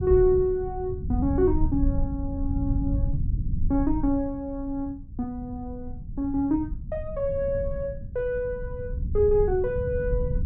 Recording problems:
low-frequency rumble; below 100 Hz, SNR 5 dB

